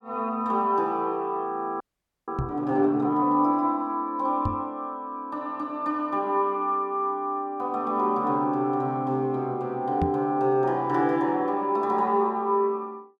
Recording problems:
frozen audio; at 2 s
microphone bump; at 2.5 s, at 4.5 s and at 10 s; peak +1 dB vs average level

